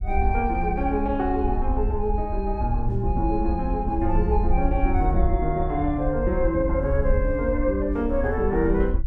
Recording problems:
low-frequency rumble; below 66 Hz, SNR 3 dB

